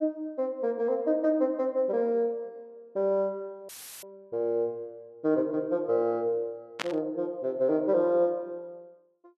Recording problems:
dropout; at 3.5 s; filled with static
burst of static; at 7 s; peak +1 dB vs average level

